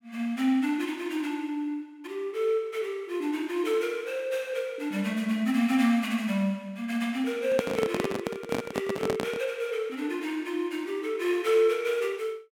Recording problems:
microphone handling noise; from 7.5 to 9.5 s; peak +3 dB vs average level

